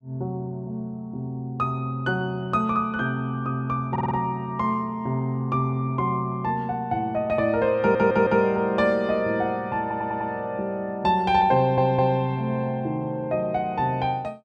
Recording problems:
audio stuttering; 4 times, first at 4 s

